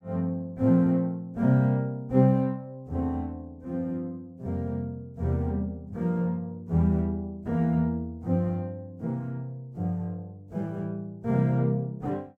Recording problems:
none

